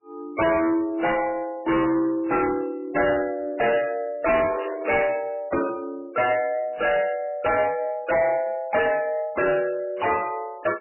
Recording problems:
codec artefacts; AAC, then MP3, log-spectral distance 3 dB, nothing above 2.8 kHz
distorted audio; soft clipping, signal-to-distortion ratio 7 dB
static burst; at 4.5 s; peak -12 dB vs average level

